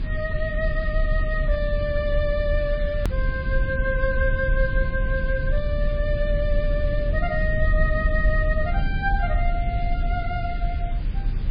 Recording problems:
lossy codec; Vorbis, then MP3, log-spectral distance 2 dB, nothing above 4.8 kHz
hum; 60 Hz, harmonics up to 660 Hz, SNR 21 dB
hiss; SNR 19 dB
low-frequency rumble; below 68 Hz, strongest tone 34 Hz, SNR -1 dB
edit click; at 3 s

